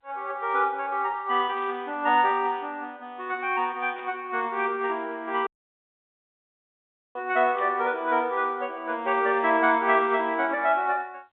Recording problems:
telephone audio; 260 Hz to 3.7 kHz, G.711
static burst; at 1.5 s, at 4 s and at 7.5 s; peak -16 dB vs average level
audio cutting out; at 5.5 s for 1.5 s

